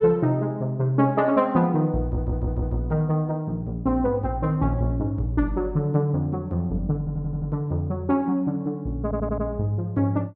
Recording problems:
stutter; at 2 s, at 7 s and at 9 s

